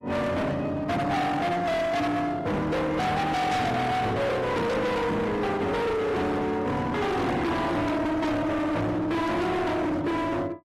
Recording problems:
lossy compression; AAC, log-spectral distance 2 dB, nothing above 13.1 kHz
distortion; hard clipping, uneven, signal-to-distortion ratio 5 dB

